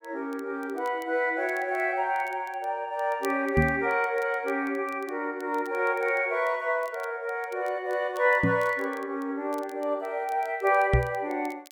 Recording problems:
crackling; vinyl, SNR 27 dB
knock on the microphone; at 3.5 s, at 8.5 s and at 11 s; peak +7 dB vs average level

